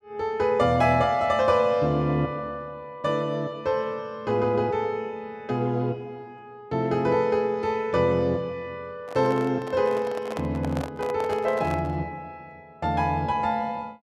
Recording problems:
handling noise; from 9 to 12 s; peak -5 dB vs average level

